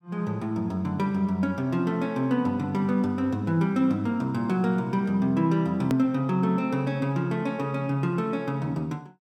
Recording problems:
click at an edit; at 6 s

